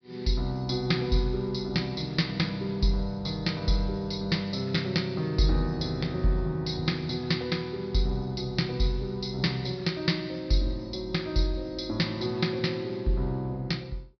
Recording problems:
treble missing; nothing above 5.5 kHz

